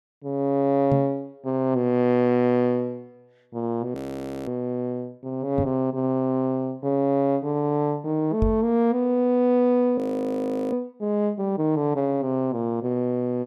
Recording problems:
knock on the microphone; at 1 s, at 5.5 s and at 8.5 s; peak +2 dB vs average level
frozen audio; at 4 s for 0.5 s and at 10 s for 0.5 s

